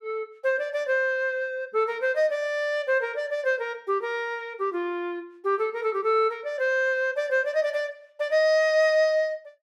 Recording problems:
none

